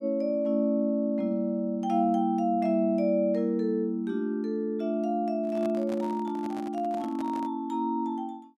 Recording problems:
handling noise; from 5.5 to 7.5 s; peak -9 dB vs average level

